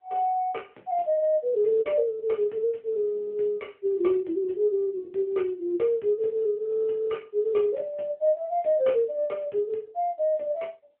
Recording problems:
phone line; 220 Hz to 3.7 kHz, AMR-NB

